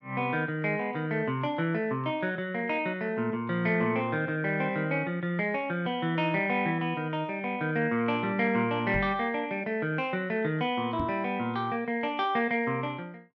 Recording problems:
knock on the microphone; at 9 s and at 11 s; peak -1 dB vs average level

